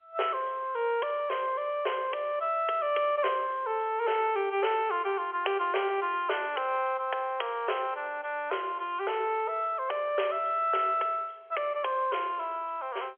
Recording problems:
phone line; 340 Hz to 3.3 kHz, G.711

